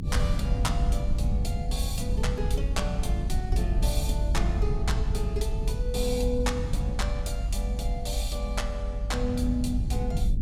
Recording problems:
rumble; below 86 Hz, SNR -4 dB

